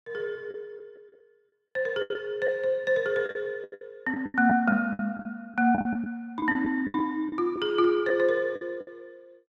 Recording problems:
packet loss; 12% of the sound replaced, filled with the last packet

